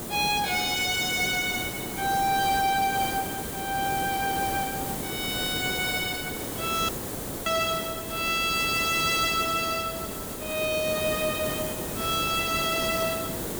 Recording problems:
distorted audio; hard clipping, uneven, signal-to-distortion ratio 10 dB
background hiss; SNR 5 dB
audio cutting out; at 7 s for 0.5 s

